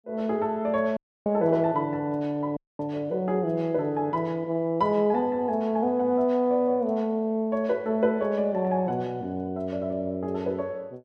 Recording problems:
dropout; at 1 s and at 2.5 s

